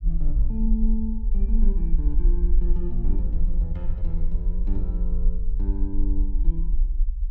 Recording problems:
low-frequency rumble; below 42 Hz, strongest tone 20 Hz, SNR -7 dB

